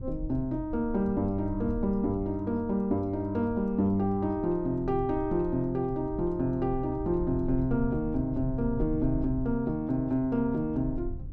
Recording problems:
rumble; below 88 Hz, SNR 12 dB

